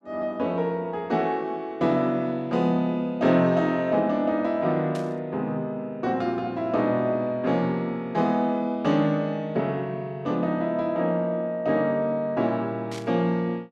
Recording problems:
static burst; at 5 s and at 13 s; peak -11 dB vs average level

